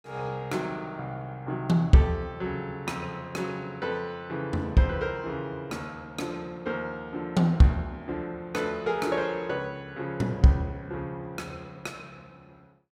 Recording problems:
none

